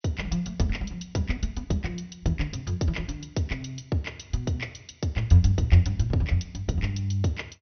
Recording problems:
treble cut off; nothing above 6.2 kHz

